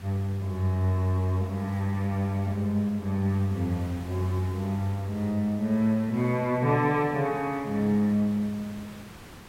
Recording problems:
background hiss; slope -4 dB per octave, SNR 19 dB

